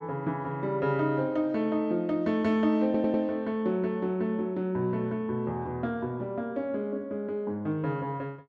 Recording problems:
audio stuttering; at 3 s

